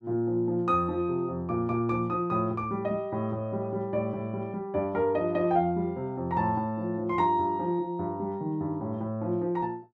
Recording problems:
none

